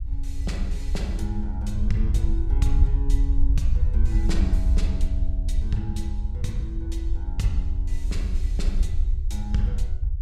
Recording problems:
low-frequency rumble; below 62 Hz, SNR -6 dB

